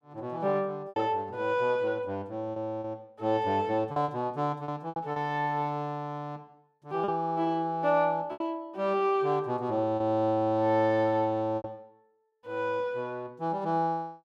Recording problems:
packet loss; 5% of the sound replaced, filled with repeated pitch periods

